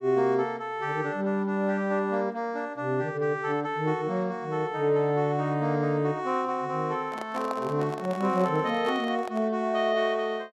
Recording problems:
microphone handling noise; from 7 to 9.5 s; peak -5 dB vs average level

